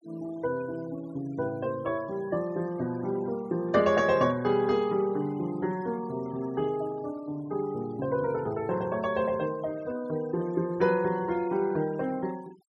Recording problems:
denoising artefacts; signal-to-artefact ratio 22 dB

